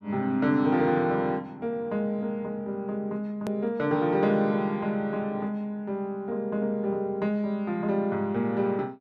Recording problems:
hard cut with a click; at 3.5 s

